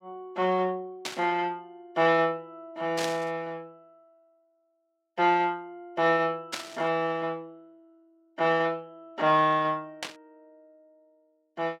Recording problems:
static burst; 4 times, first at 1 s; peak -1 dB vs average level

